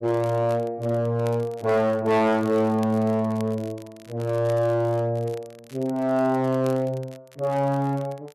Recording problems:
distorted audio; hard clipping, uneven, signal-to-distortion ratio 11 dB
crackling; vinyl, SNR 26 dB

